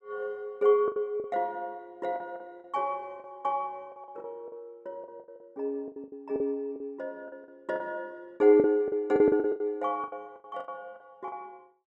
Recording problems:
lost packets; 14% of the sound replaced, filled with the last packet

